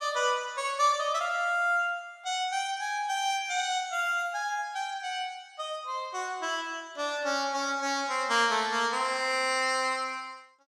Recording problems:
none

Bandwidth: 15 kHz